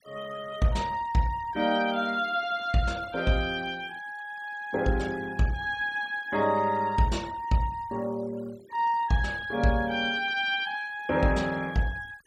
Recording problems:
denoising artefacts; signal-to-artefact ratio 22 dB

